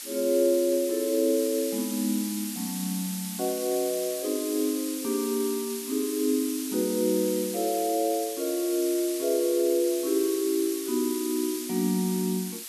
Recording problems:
hiss; slope +4 dB per octave, SNR 8 dB

